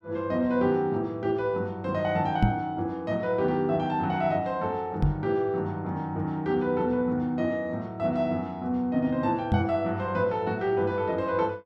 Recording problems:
microphone thump; at 2.5 s, at 5 s and at 9.5 s; peak +8 dB vs average level

